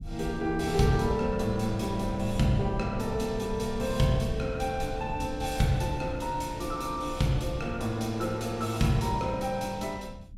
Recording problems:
rumble; below 120 Hz, SNR 12 dB

